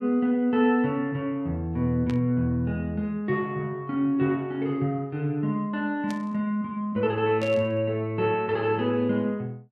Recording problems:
static burst; at 2 s, at 6 s and at 7.5 s; peak -10 dB vs average level

